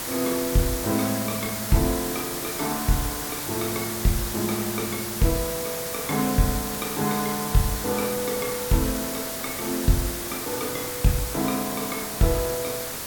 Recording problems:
hiss; slope -2 dB per octave, SNR 2 dB

